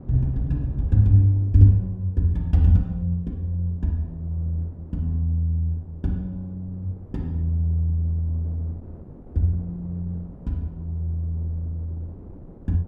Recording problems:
wind noise; below 280 Hz, SNR 20 dB

